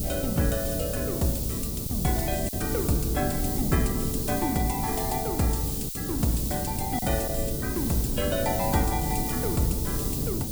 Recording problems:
codec artefacts; AAC, log-spectral distance 2 dB
hum; 50 Hz, harmonics up to 850 Hz, SNR 23 dB
hiss; SNR 2 dB
wind noise; below 220 Hz, SNR 4 dB
lost packets; 1.5% of the sound replaced, filled with silence

